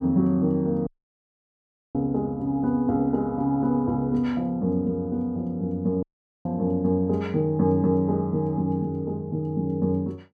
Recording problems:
dropout; at 1 s for 1 s and at 6 s

